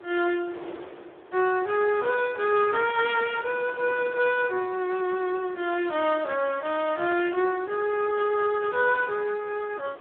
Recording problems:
telephone audio; 300 Hz to 3.6 kHz, Speex
wind on the microphone; below 890 Hz, SNR 21 dB

